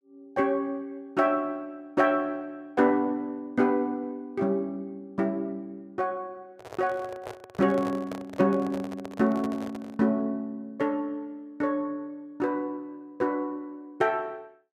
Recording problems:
microphone handling noise; from 6.5 to 10 s; peak -5 dB vs average level

